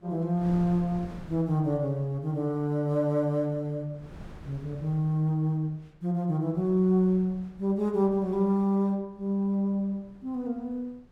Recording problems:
wind on the microphone; below 320 Hz, SNR 21 dB

